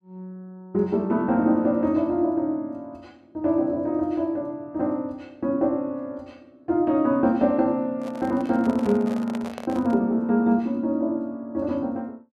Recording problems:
handling noise; from 8 to 10 s; peak -8 dB vs average level

